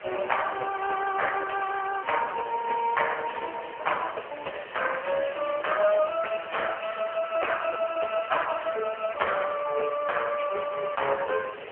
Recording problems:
telephone audio; 340 Hz to 3 kHz, AMR-NB
hiss; SNR 16 dB
wind noise; below 770 Hz, SNR 20 dB

